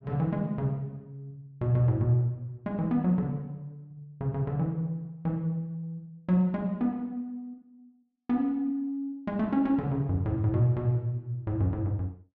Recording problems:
none

